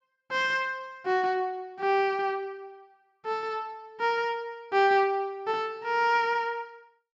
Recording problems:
none

